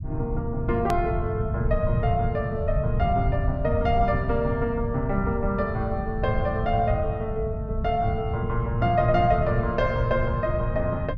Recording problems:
rumble; below 130 Hz, SNR 4 dB
hard cut with a click; at 1 s

